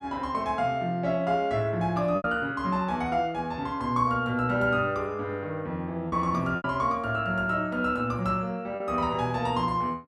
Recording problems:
lost packets; 2% of the sound replaced, filled with repeated pitch periods

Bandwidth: 13 kHz